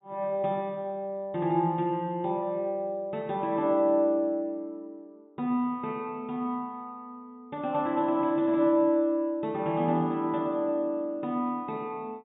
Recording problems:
treble cut off; nothing above 4 kHz

